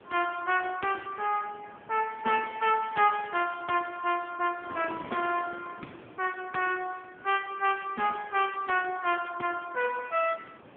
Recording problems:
telephone audio; 280 Hz to 3.3 kHz, AMR-NB
wind noise; below 1.1 kHz, SNR 20 dB

